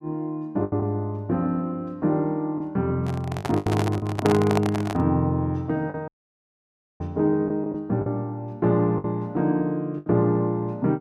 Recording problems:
lost packets; 6% of the sound replaced, filled with the last packet
handling noise; from 3 to 5 s; peak +3 dB vs average level
audio cutting out; at 6 s for 1 s

